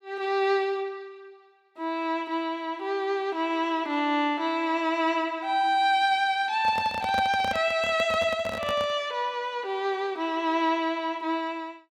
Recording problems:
microphone handling noise; from 6.5 to 9 s; peak -3 dB vs average level

